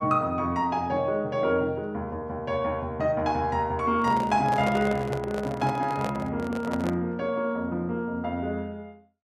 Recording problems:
microphone handling noise; from 4 to 7 s; peak -2 dB vs average level

